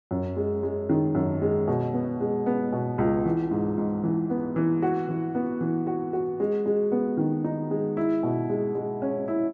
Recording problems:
none

